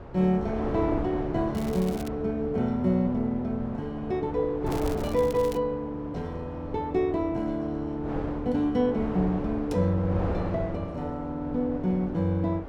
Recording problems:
wind noise; below 620 Hz, SNR 9 dB
crackling; at 1.5 s and at 4.5 s; loose cable, SNR 18 dB

